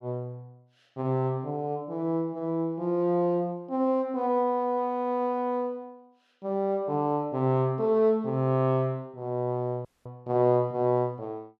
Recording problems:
dropout; at 10 s

